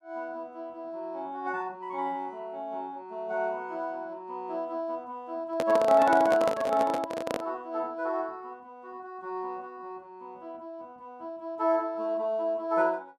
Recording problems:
microphone handling noise; from 5.5 to 7.5 s; peak +3 dB vs average level

